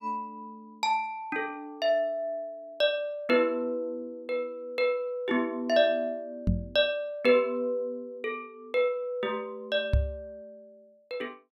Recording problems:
microphone thump; at 6.5 s and at 10 s; peak +7 dB vs average level

